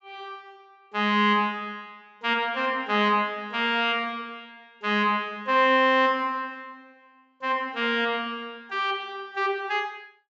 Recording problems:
treble cut off; nothing above 8 kHz

